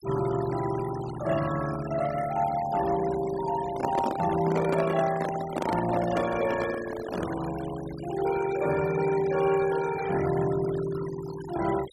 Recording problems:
noise reduction artefacts; signal-to-artefact ratio 13 dB
handling noise; from 3.5 to 7.5 s; peak +2 dB vs average level

